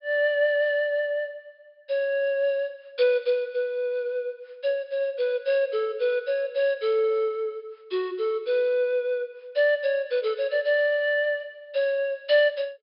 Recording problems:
low-pass filter; nothing above 5.5 kHz

